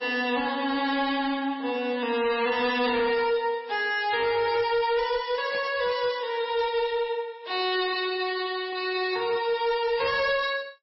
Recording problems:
codec artefacts; MP3, log-spectral distance 3 dB, nothing above 4.9 kHz
distortion; hard clipping, signal-to-distortion ratio 12 dB
burst of static; at 5.5 s; peak -6 dB vs average level

